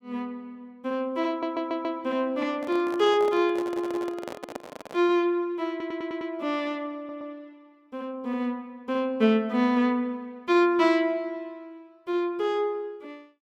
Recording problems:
audio stuttering; 4 times, first at 1.5 s
handling noise; from 2.5 to 5 s; peak -5 dB vs average level

